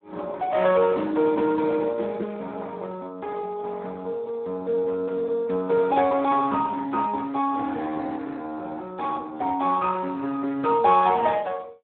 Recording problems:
telephone audio; 220 Hz to 2.8 kHz, Speex

